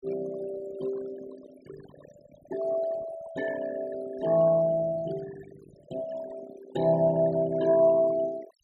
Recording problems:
denoising artefacts; signal-to-artefact ratio 15 dB

